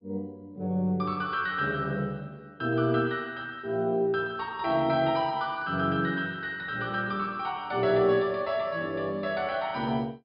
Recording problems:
treble missing; nothing above 5.5 kHz

